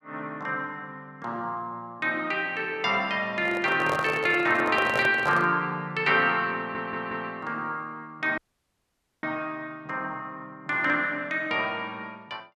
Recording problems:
handling noise; from 3.5 to 5.5 s; peak 0 dB vs average level
audio stuttering; at 6.5 s
audio cutting out; at 8.5 s for 1 s

